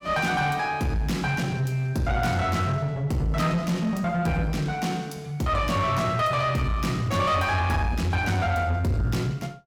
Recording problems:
distorted audio; soft clipping, signal-to-distortion ratio 10 dB

